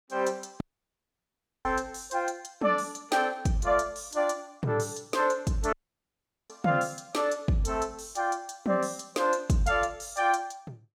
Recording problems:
audio cutting out; at 0.5 s for 1 s and at 5.5 s for 1 s

